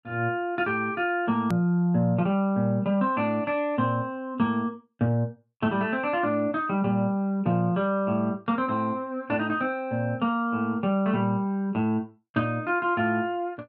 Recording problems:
hard cut with a click; at 1.5 s

